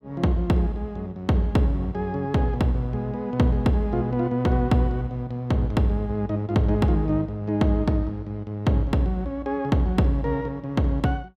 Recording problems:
none

